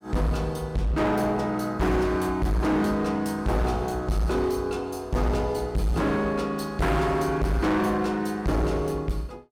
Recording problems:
distortion; hard clipping, signal-to-distortion ratio 7 dB

